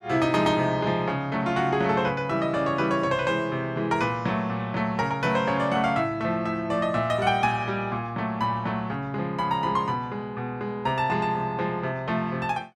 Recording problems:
none

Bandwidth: 13.5 kHz